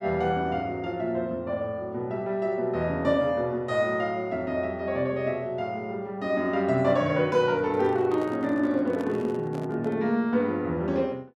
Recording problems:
microphone handling noise; from 7.5 to 10 s; peak -9 dB vs average level

